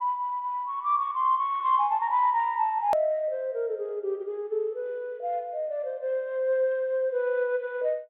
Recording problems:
treble cut off; nothing above 4 kHz
edit click; at 3 s

